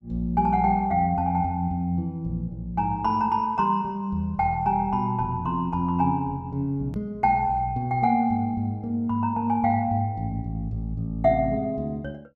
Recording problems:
edit click; at 7 s

